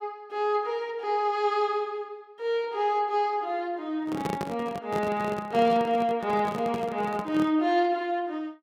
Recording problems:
microphone handling noise; from 4 to 7.5 s; peak 0 dB vs average level

